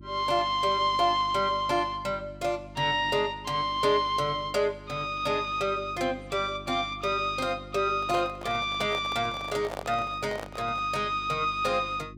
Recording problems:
electrical hum; 50 Hz, harmonics up to 350 Hz, SNR 19 dB
microphone handling noise; from 8 to 11 s; peak -5 dB vs average level

